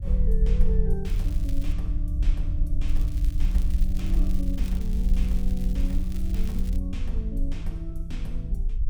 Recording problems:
low-frequency rumble; below 52 Hz, SNR -6 dB
crackling; at 1 s and from 3 to 7 s; loose cable, SNR 15 dB

